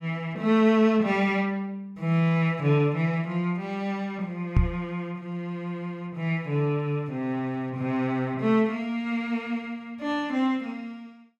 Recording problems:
microphone thump; at 4.5 s; peak +8 dB vs average level

